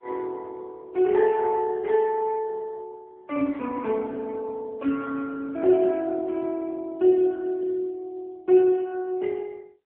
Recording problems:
telephone audio; 240 Hz to 3 kHz, AMR-NB

